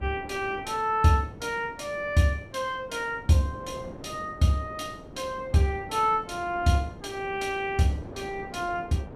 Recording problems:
wind noise; below 520 Hz, SNR 17 dB

